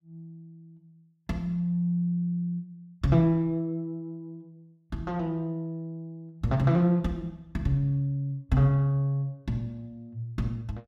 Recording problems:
none

